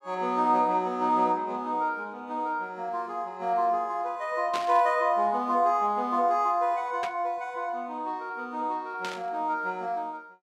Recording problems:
static burst; at 4.5 s, at 7 s and at 9 s; peak -3 dB vs average level

